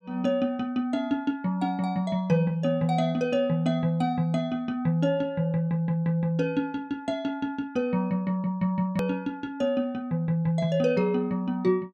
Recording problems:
click at an edit; at 9 s

